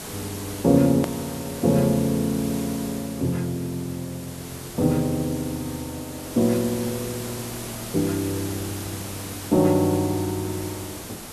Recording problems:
background hiss; slope -3 dB per octave, SNR 11 dB
hard cut with a click; at 1 s

